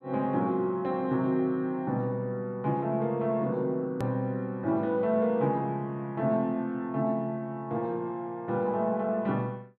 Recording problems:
hard cut with a click; at 4 s

